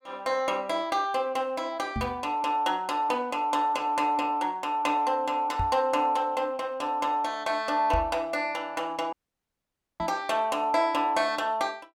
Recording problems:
microphone thump; 4 times, first at 2 s; peak 0 dB vs average level
audio cutting out; at 9 s for 1 s

